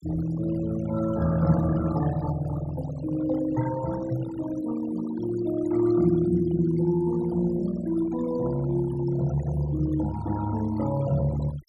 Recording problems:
noise reduction artefacts; signal-to-artefact ratio 15 dB

